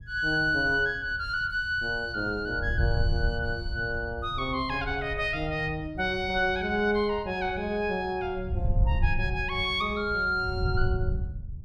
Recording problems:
wind noise; below 96 Hz, SNR 6 dB

